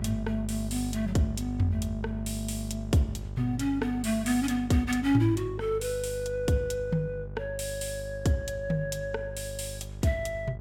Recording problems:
electrical hum; 50 Hz, harmonics up to 600 Hz, SNR 9 dB

